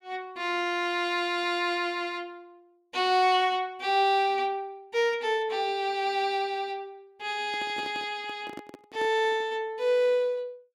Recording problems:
handling noise; from 7.5 to 9.5 s; peak -9 dB vs average level

